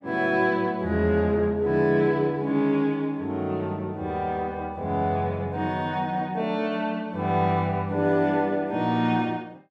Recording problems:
none

